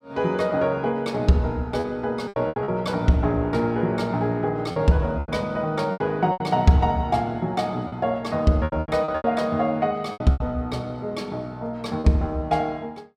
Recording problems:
lost packets; 8% of the sound replaced, filled with repeated pitch periods

